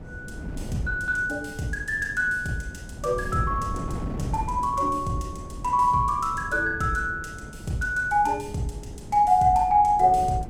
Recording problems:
wind noise; below 240 Hz, SNR 13 dB

